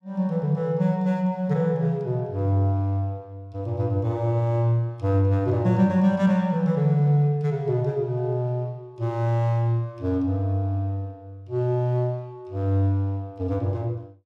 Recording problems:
none

